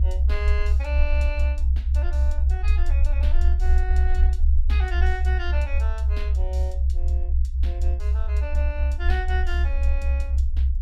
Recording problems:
low-frequency rumble; below 66 Hz, strongest tone 64 Hz, SNR -12 dB

